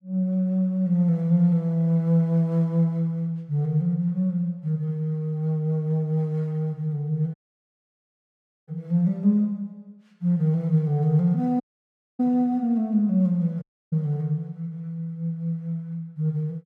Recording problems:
dropout; at 7.5 s for 1.5 s, at 12 s for 0.5 s and at 14 s

